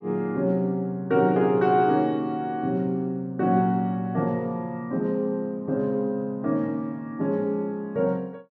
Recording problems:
none

